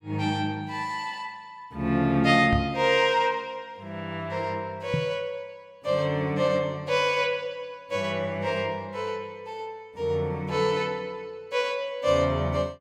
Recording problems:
microphone thump; at 2.5 s and at 5 s; peak +3 dB vs average level

